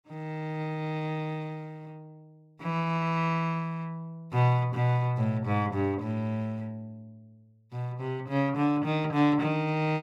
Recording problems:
none

